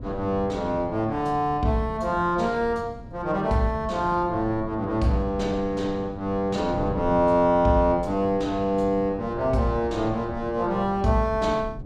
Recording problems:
wind on the microphone; below 210 Hz, SNR 14 dB

